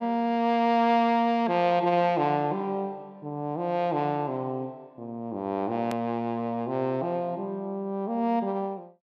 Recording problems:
edit click; at 6 s

